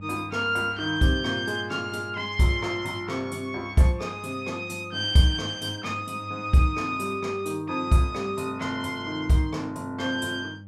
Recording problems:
electrical hum; 50 Hz, harmonics up to 600 Hz, SNR 18 dB

